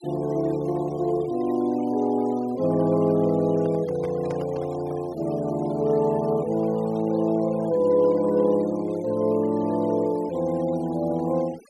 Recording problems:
denoising artefacts; signal-to-artefact ratio 24 dB
microphone handling noise; from 3.5 to 5 s; peak -8 dB vs average level

